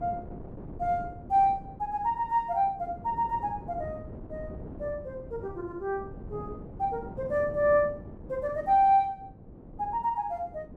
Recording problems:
wind on the microphone; below 350 Hz, SNR 15 dB

